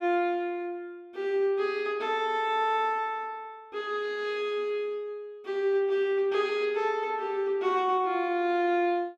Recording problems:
none

